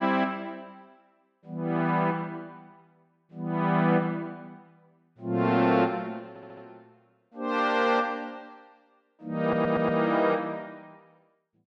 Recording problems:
audio stuttering; at 6.5 s and at 9.5 s

